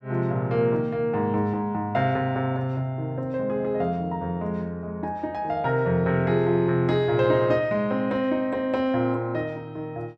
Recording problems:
none

